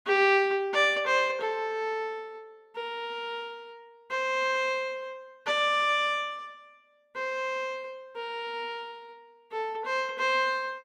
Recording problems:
none

